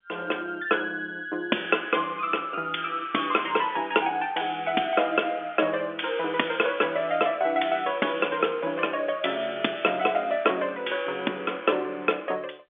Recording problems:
telephone audio; 240 Hz to 3.5 kHz, G.711

